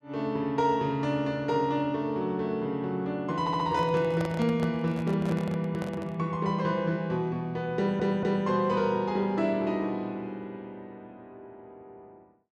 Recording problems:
audio stuttering; at 3.5 s and at 8 s
microphone handling noise; from 3.5 to 6 s; peak -4 dB vs average level

